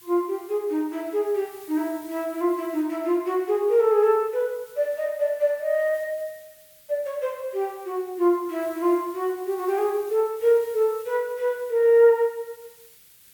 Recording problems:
background hiss; SNR 24 dB

